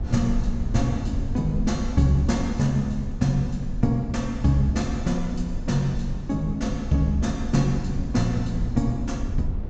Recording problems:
low-pass filter; nothing above 8 kHz
low-frequency rumble; below 84 Hz, SNR 7 dB

